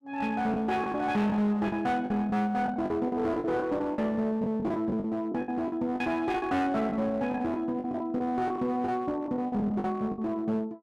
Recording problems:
distortion; hard clipping, uneven, signal-to-distortion ratio 11 dB
lost packets; 12% of the sound replaced, filled with the last packet

